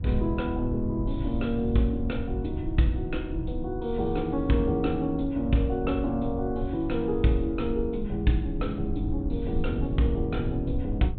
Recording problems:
low-pass filter; nothing above 4 kHz
low-frequency rumble; below 98 Hz, SNR 6 dB

